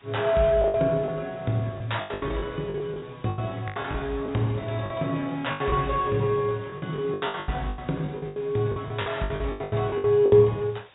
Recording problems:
treble cut off; nothing above 4 kHz
hiss; SNR 27 dB
lost packets; 17% of the sound replaced, filled with the last packet

